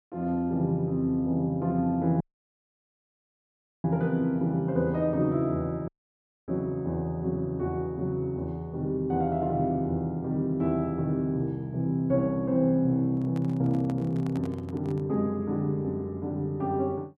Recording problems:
dropout; at 2 s for 1.5 s and at 6 s for 0.5 s
microphone handling noise; from 13 to 15 s; peak -11 dB vs average level

